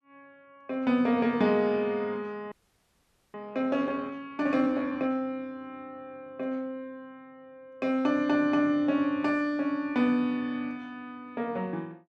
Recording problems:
frozen audio; at 2.5 s for 1 s

